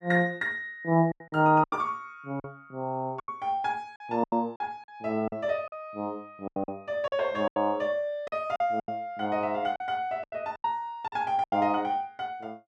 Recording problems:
lost packets; 11% of the sound replaced, filled with silence

